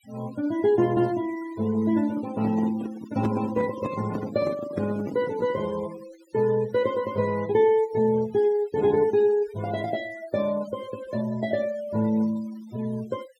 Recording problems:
denoising artefacts; signal-to-artefact ratio 20 dB
microphone handling noise; from 2 to 5.5 s; peak 0 dB vs average level

